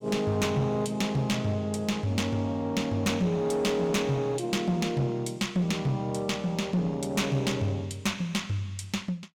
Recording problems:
distorted audio; hard clipping, uneven, signal-to-distortion ratio 11 dB

